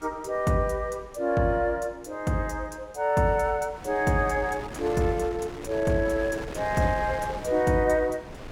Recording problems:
wind on the microphone; below 1.2 kHz, SNR 14 dB

